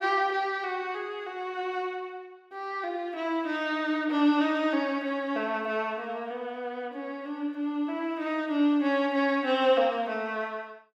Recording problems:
none

